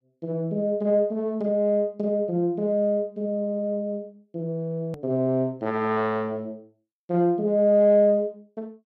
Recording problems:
hard cut with a click; at 5 s

